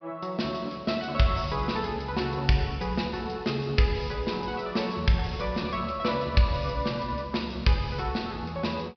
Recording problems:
low-pass filter; nothing above 5.5 kHz

